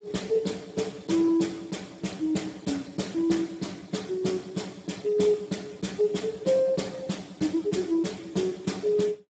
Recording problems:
codec artefacts; Speex, log-spectral distance 5 dB, nothing above 7.6 kHz

